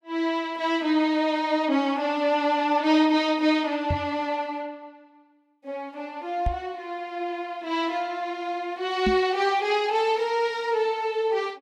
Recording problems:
knock on the microphone; at 4 s, at 6.5 s and at 9 s; peak +2 dB vs average level

